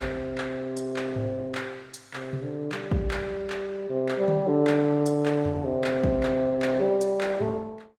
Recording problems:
codec artefacts; Opus, log-spectral distance 3 dB, nothing above 18 kHz

